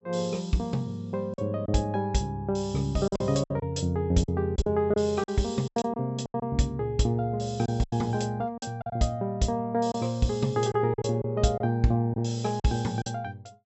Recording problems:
treble cut off; nothing above 7.6 kHz
packet loss; 8% of the sound replaced, filled with silence

